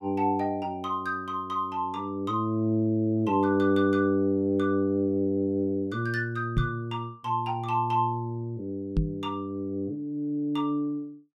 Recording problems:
microphone bump; at 6.5 s and at 9 s; peak +5 dB vs average level

